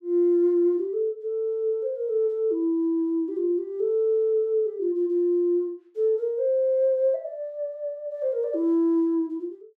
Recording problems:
none

